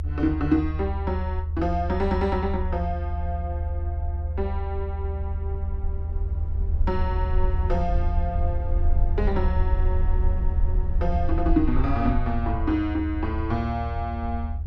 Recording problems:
rumble; below 78 Hz, SNR -1 dB

